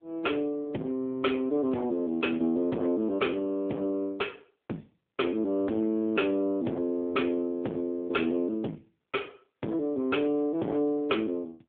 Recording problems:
telephone audio; 150 Hz to 3.5 kHz, AMR-NB
distorted audio; hard clipping, signal-to-distortion ratio 10 dB

